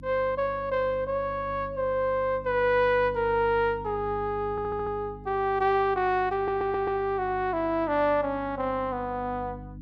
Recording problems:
mains hum; 50 Hz, harmonics up to 300 Hz, SNR 17 dB
stutter; at 4.5 s and at 6.5 s

